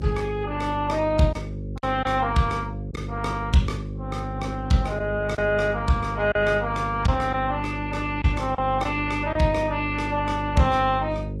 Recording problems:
lossy compression; Vorbis, then Opus, log-spectral distance 2 dB
hum; 50 Hz, harmonics up to 550 Hz, SNR 8 dB
packet loss; 3% of the sound replaced, filled with silence

